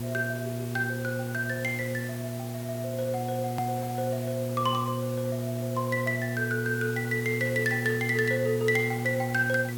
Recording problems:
hum; 60 Hz, harmonics up to 480 Hz, SNR 4 dB
background hiss; slope -3 dB per octave, SNR 13 dB
hard cut with a click; at 3.5 s

